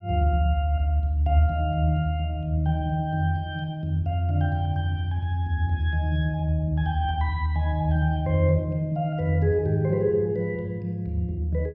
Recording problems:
none

